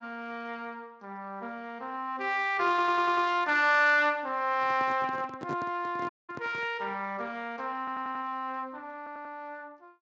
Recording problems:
lossy compression; Speex, log-spectral distance 2 dB
audio stuttering; at 2.5 s, at 8 s and at 9 s
handling noise; from 4.5 to 6.5 s; peak -5 dB vs average level
dropout; at 6 s

